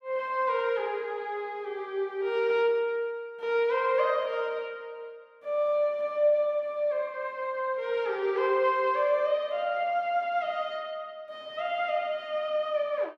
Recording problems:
none

